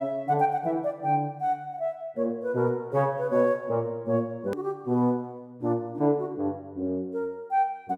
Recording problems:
hard cut with a click; at 4.5 s

